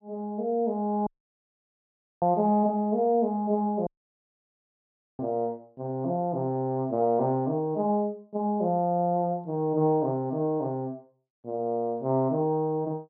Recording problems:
treble missing; nothing above 5.1 kHz
audio cutting out; at 1 s for 1 s and at 4 s for 1.5 s

